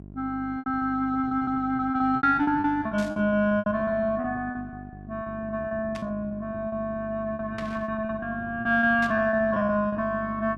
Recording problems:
hum; 50 Hz, harmonics up to 750 Hz, SNR 17 dB
packet loss; 17% of the sound replaced, filled with repeated pitch periods
static burst; 4 times, first at 3 s; peak -9 dB vs average level

